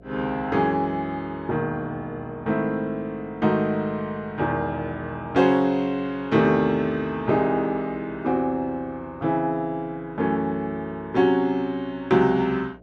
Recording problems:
mains hum; 60 Hz, harmonics up to 720 Hz, SNR 25 dB

